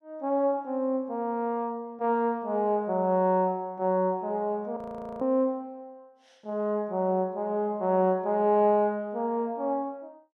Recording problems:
frozen audio; at 5 s

